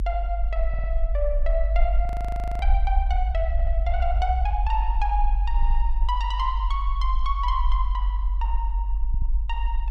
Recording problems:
low-frequency rumble; below 50 Hz, SNR -4 dB
audio stuttering; 4 times, first at 0.5 s
audio freezing; at 2 s for 0.5 s

